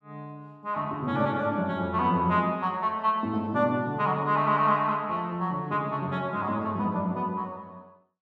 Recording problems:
none

